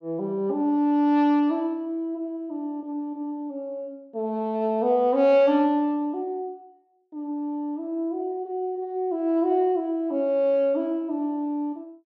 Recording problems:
none

